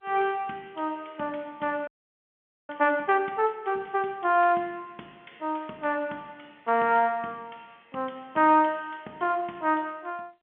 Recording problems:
telephone audio; 240 Hz to 3.4 kHz, G.711
audio freezing; at 2 s for 1 s

